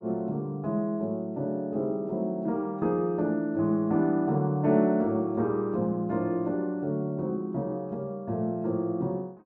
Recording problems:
none

